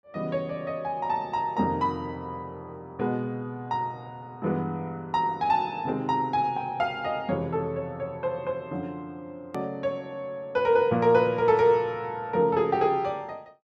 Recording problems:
click at an edit; at 9.5 s

